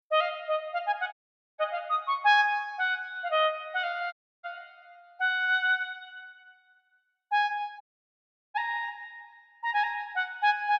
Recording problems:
dropout; at 1 s, at 4 s and at 8 s for 0.5 s

